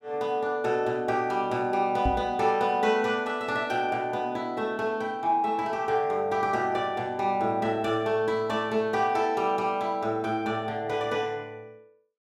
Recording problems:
microphone bump; at 2 s; peak +2 dB vs average level

